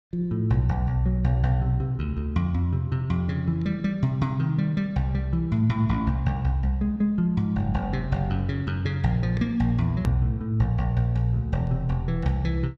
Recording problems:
hard cut with a click; at 10 s

